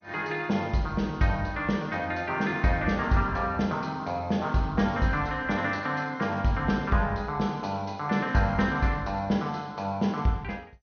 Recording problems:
codec artefacts; MP2, log-spectral distance 2 dB, nothing above 6.3 kHz

